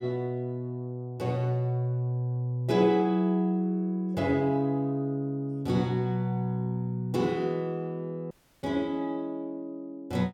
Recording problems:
audio cutting out; at 8.5 s

